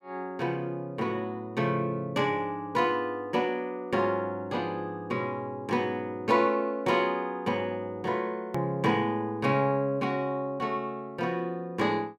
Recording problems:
edit click; at 8.5 s

